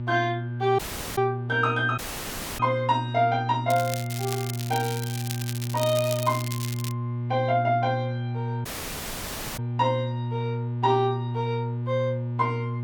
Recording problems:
electrical hum; 60 Hz, harmonics up to 600 Hz, SNR 4 dB
dropout; at 1 s, at 2 s for 0.5 s and at 8.5 s for 1 s
crackling; from 3.5 to 7 s; loose cable, SNR 9 dB

